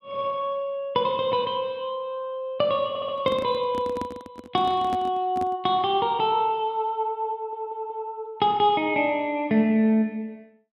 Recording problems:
audio stuttering; at 3 s and at 7.5 s
microphone handling noise; from 3 to 5.5 s; peak -4 dB vs average level

